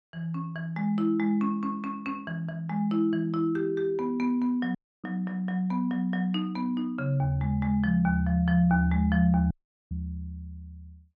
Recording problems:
dropout; at 5 s and at 9.5 s

